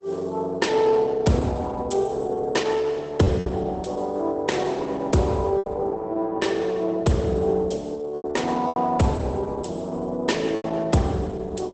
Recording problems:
lossy compression; Opus, log-spectral distance 3 dB, nothing above 8.2 kHz
lost packets; 3% of the sound replaced, filled with repeated pitch periods

